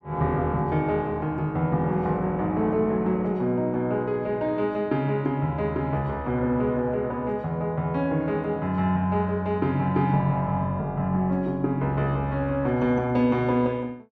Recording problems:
none

